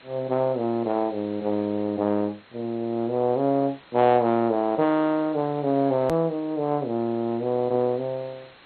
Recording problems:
lossy codec; MP2, log-spectral distance 9 dB, nothing above 13.1 kHz
hiss; SNR 25 dB
edit click; at 6 s

